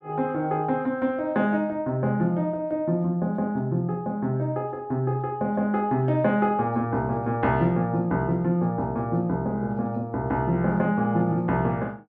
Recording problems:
none

